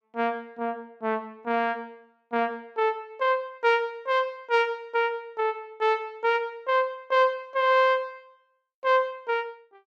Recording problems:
none

